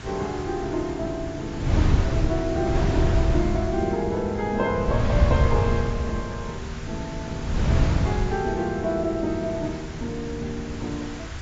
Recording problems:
lossy codec; AAC, log-spectral distance 6 dB
hiss; SNR 14 dB
wind on the microphone; below 130 Hz, SNR -2 dB

